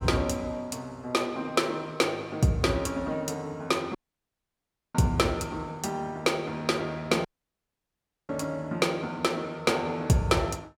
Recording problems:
dropout; at 4 s for 1 s and at 7.5 s for 1 s

